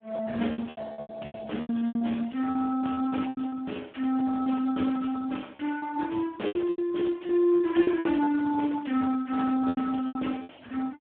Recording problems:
telephone audio; 190 Hz to 3.4 kHz, Speex
lost packets; 14% of the sound replaced, filled with repeated pitch periods

